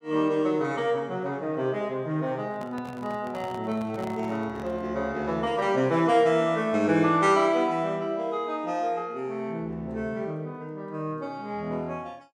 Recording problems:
handling noise; from 2.5 to 5 s; peak -9 dB vs average level

